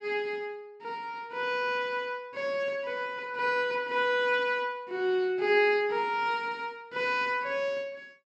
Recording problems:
none

